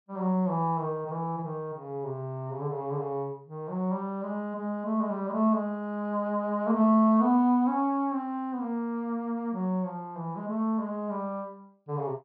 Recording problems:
treble cut off; nothing above 5.5 kHz

